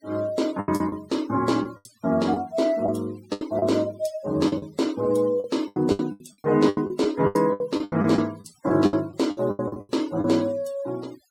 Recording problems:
noise reduction artefacts; signal-to-artefact ratio 22 dB
packet loss; 14% of the sound replaced, filled with the last packet

